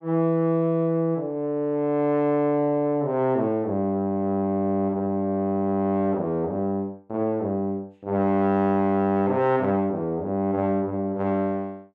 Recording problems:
none

